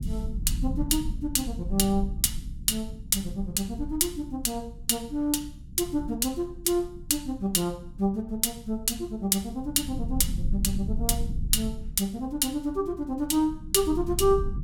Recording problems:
low-frequency rumble; below 82 Hz, SNR 10 dB

